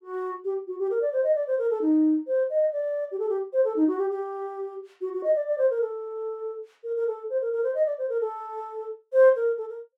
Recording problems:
none

